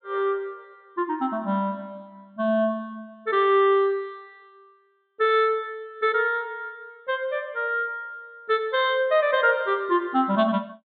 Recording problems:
treble missing; nothing above 4 kHz

